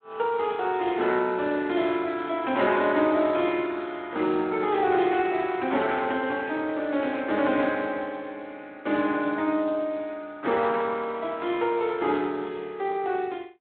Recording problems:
phone line; 240 Hz to 3.7 kHz, Speex

